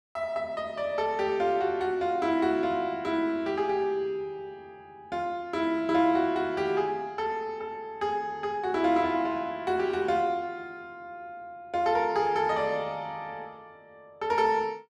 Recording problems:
none

